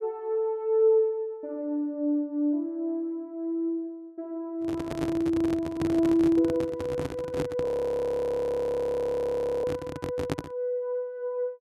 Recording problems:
handling noise; from 4.5 to 11 s; peak +3 dB vs average level
audio freezing; at 7.5 s for 2 s

